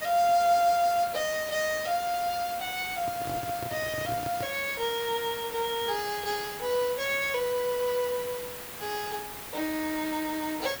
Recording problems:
hiss; slope -2 dB per octave, SNR 9 dB
handling noise; from 3 to 4.5 s; peak -5 dB vs average level

